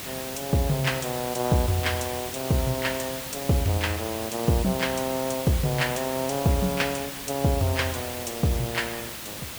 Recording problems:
hiss; slope -1 dB per octave, SNR 7 dB

